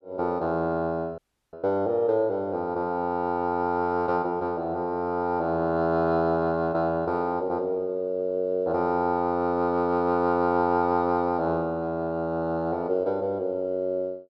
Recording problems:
audio cutting out; at 1 s

